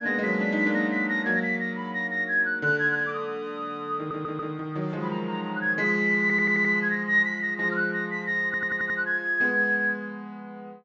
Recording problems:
low-pass filter; nothing above 8 kHz
audio stuttering; at 4 s, at 6 s and at 8.5 s

